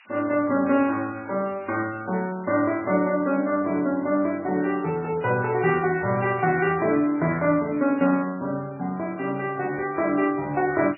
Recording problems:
codec artefacts; MP3, log-spectral distance 15 dB, nothing above 2.7 kHz
hiss; SNR 27 dB

